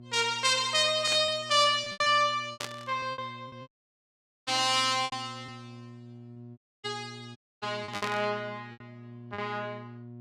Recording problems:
electrical hum; 60 Hz, harmonics up to 720 Hz, SNR 20 dB
packet loss; 11% of the sound replaced, filled with repeated pitch periods
static burst; at 1 s, at 2.5 s and at 8 s; peak -4 dB vs average level
audio cutting out; at 3.5 s for 1 s, at 6.5 s and at 7.5 s

